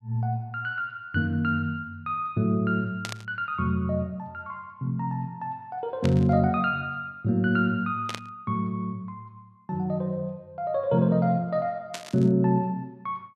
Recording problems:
burst of static; 4 times, first at 3 s; peak -3 dB vs average level

